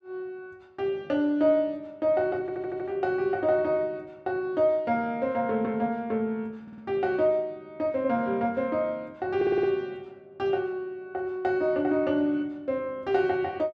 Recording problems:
stutter; at 2.5 s, at 6.5 s and at 9.5 s

